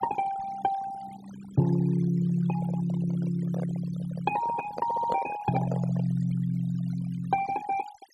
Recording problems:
noise reduction artefacts; signal-to-artefact ratio 16 dB
handling noise; from 2.5 to 6 s; peak 0 dB vs average level
audio stuttering; at 5 s

